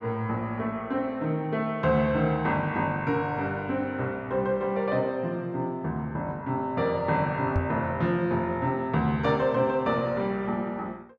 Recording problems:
microphone bump; at 7.5 s; peak +4 dB vs average level

